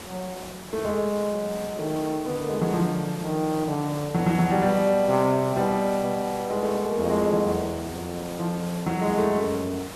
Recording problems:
hiss; slope -4 dB per octave, SNR 14 dB

